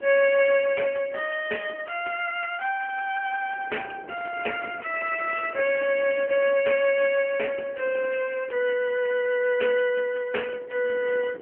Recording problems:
phone line; 370 Hz to 2.9 kHz, AMR-NB
wind on the microphone; below 540 Hz, SNR 20 dB

